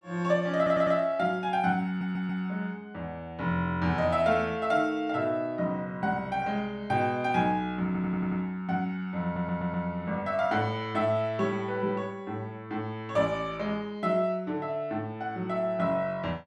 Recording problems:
stutter; 4 times, first at 0.5 s

